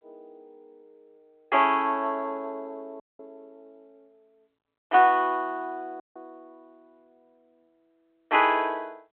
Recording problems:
telephone audio; 300 Hz to 3.3 kHz, G.726
dropout; at 3 s and at 6 s

